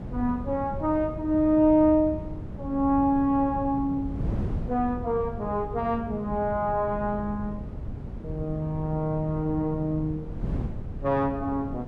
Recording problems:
wind on the microphone; below 190 Hz, SNR 10 dB

